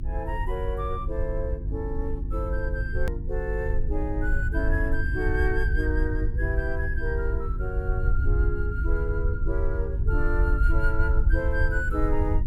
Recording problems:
electrical hum; 50 Hz, harmonics up to 350 Hz, SNR 5 dB
rumble; below 68 Hz, SNR -3 dB
click at an edit; at 3 s

